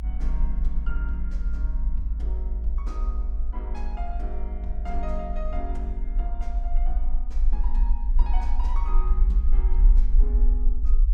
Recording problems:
rumble; below 48 Hz, SNR -13 dB

